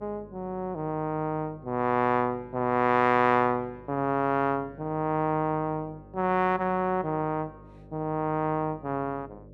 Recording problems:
hum; 50 Hz, harmonics up to 600 Hz, SNR 22 dB

